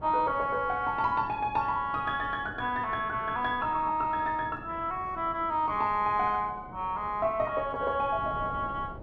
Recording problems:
wind on the microphone; below 570 Hz, SNR 17 dB

